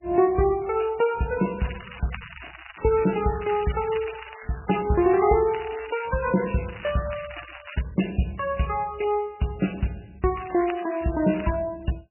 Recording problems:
lossy compression; MP3, log-spectral distance 13 dB, nothing above 2.9 kHz
crackling; from 1.5 to 8 s and from 10 to 12 s; loose cable, SNR 15 dB

